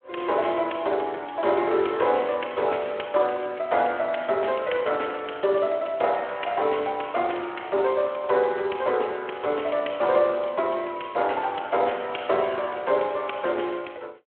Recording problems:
phone line; 300 Hz to 3.4 kHz, Speex

